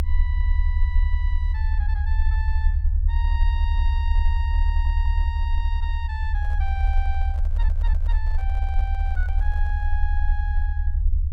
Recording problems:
low-frequency rumble; below 72 Hz, strongest tone 36 Hz, SNR -13 dB
stutter; at 4.5 s and at 7.5 s
microphone handling noise; from 6.5 to 10 s; peak -7 dB vs average level

